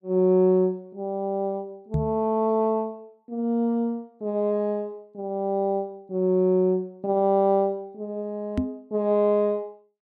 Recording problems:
microphone thump; at 2 s and at 8.5 s; peak +3 dB vs average level

